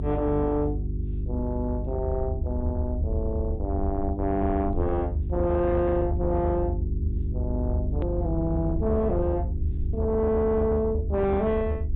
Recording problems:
treble missing; nothing above 4 kHz
distortion; soft clipping, signal-to-distortion ratio 11 dB
hum; 50 Hz, harmonics up to 400 Hz, SNR 5 dB
rumble; below 80 Hz, strongest tone 72 Hz, SNR 4 dB
click at an edit; at 8 s

